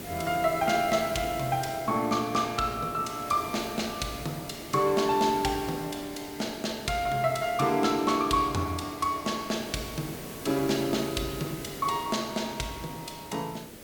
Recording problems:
hiss; SNR 13 dB

